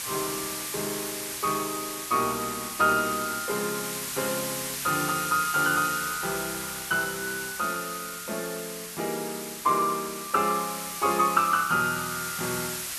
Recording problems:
background hiss; slope +2 dB per octave, SNR 5 dB

